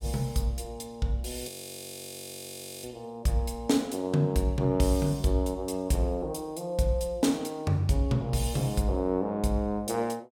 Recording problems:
frozen audio; at 1.5 s for 1.5 s

